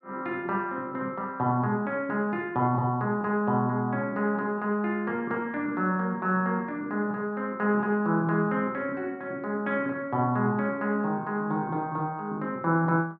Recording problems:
none

